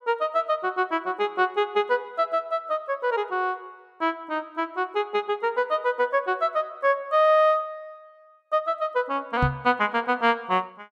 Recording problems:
knock on the microphone; at 9.5 s; peak +4 dB vs average level

